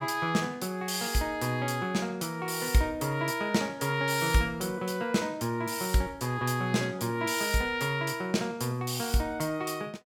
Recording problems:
none

